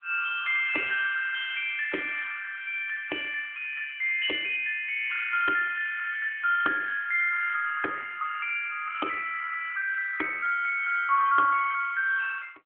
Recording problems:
telephone audio; 600 Hz to 3.5 kHz, AMR-NB

